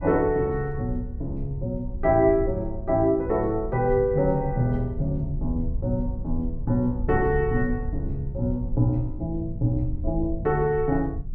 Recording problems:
rumble; below 80 Hz, SNR 9 dB

